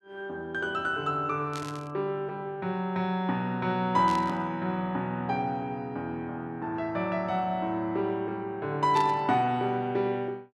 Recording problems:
burst of static; at 1.5 s, at 4 s and at 9 s; peak -6 dB vs average level

